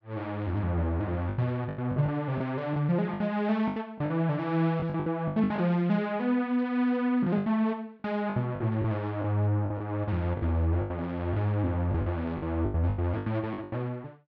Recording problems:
lost packets; 12% of the sound replaced, filled with the last packet

